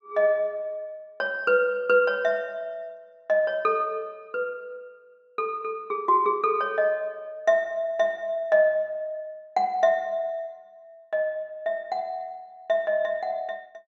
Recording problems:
none

